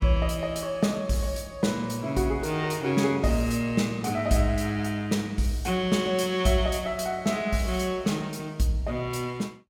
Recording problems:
none

